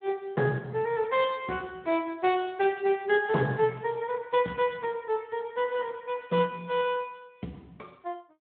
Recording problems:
telephone audio; 130 Hz to 3.6 kHz, Speex

